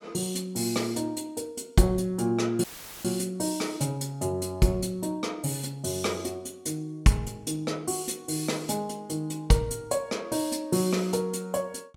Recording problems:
dropout; at 2.5 s; filled with static

